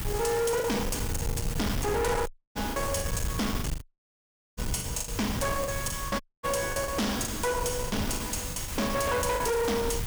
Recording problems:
distortion; hard clipping, signal-to-distortion ratio 7 dB
background hiss; slope -2 dB per octave, SNR 9 dB
low-frequency rumble; below 150 Hz, SNR 7 dB
packet loss; 10% of the sound replaced, filled with the last packet
dropout; at 2.5 s, at 4 s for 1 s and at 6 s

